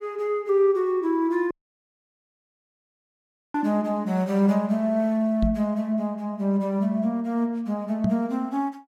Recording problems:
audio cutting out; at 1.5 s for 2 s
knock on the microphone; at 3.5 s, at 5.5 s and at 8 s; peak +3 dB vs average level

